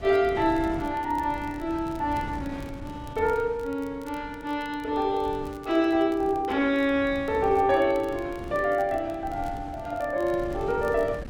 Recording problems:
wind on the microphone; below 250 Hz, SNR 16 dB
crackling; vinyl, SNR 29 dB

